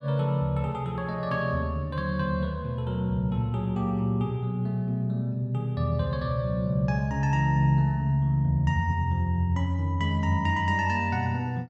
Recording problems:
none

